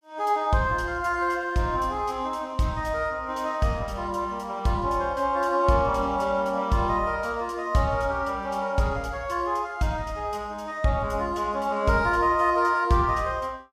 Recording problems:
none

